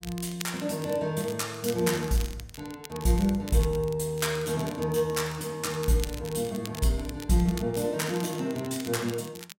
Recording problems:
crackle; vinyl, SNR 15 dB

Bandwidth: 16 kHz